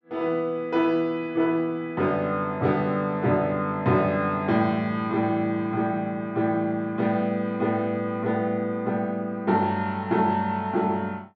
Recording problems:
none

